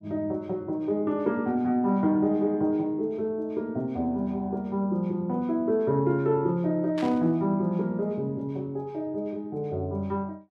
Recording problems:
burst of static; at 7 s; peak -8 dB vs average level

